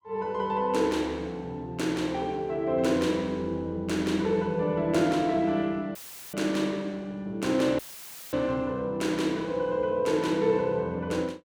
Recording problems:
audio cutting out; at 6 s and at 8 s for 0.5 s; filled with static

